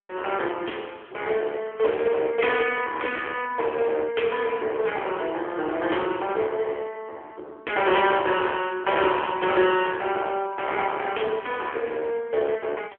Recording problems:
phone line; 280 Hz to 3.2 kHz, AMR-NB
distortion; hard clipping, uneven, signal-to-distortion ratio 10 dB

